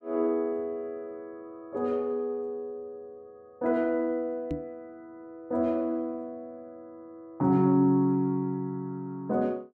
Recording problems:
microphone thump; at 4.5 s; peak -1 dB vs average level

